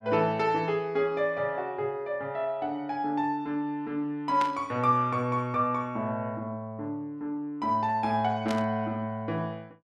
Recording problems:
static burst; at 4.5 s and at 8.5 s; peak -2 dB vs average level

